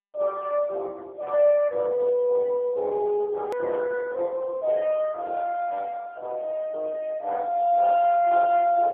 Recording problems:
telephone audio; 320 Hz to 3.5 kHz, AMR-NB
click at an edit; at 3.5 s

